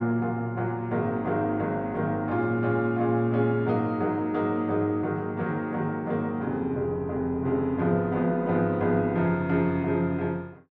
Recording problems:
none

